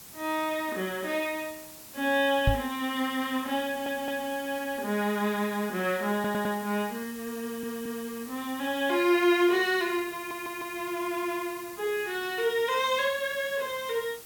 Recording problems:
hiss; slope -1 dB per octave, SNR 15 dB
microphone bump; at 2.5 s; peak +7 dB vs average level
stutter; 4 times, first at 3.5 s

